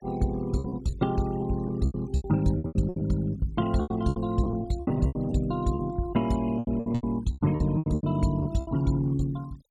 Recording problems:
noise reduction artefacts; signal-to-artefact ratio 21 dB
packet loss; 16% of the sound replaced, filled with repeated pitch periods

